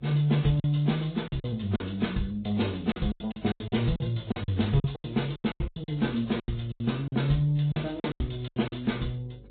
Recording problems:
treble missing; nothing above 3.8 kHz
lossy codec; AAC, then MP3, log-spectral distance 5 dB
electrical hum; 50 Hz, harmonics up to 550 Hz, SNR 26 dB
lost packets; 15% of the sound replaced, filled with silence

